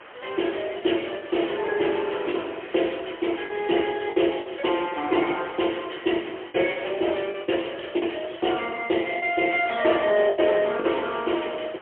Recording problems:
telephone audio; 260 Hz to 3.3 kHz, AMR-NB, then MP3
hiss; SNR 21 dB
lost packets; 7% of the sound replaced, filled with the last packet

